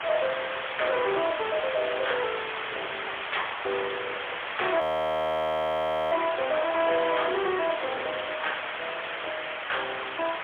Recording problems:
phone line; 340 Hz to 3.4 kHz, AMR-NB, then MP3
distortion; hard clipping, signal-to-distortion ratio 13 dB
background hiss; SNR 4 dB
crackle; from 1.5 to 2.5 s and from 7.5 to 9.5 s; loose cable, SNR 20 dB
frozen audio; at 5 s for 1.5 s

